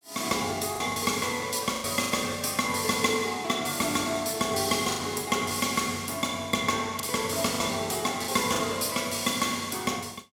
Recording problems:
packet loss; 5% of the sound replaced, filled with the last packet

